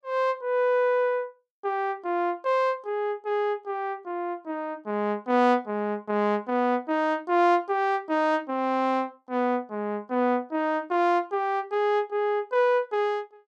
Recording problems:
none

